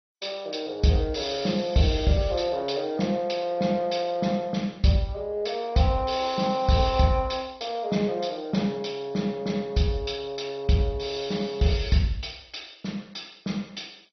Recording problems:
codec artefacts; MP2, log-spectral distance 5 dB, nothing above 5.8 kHz

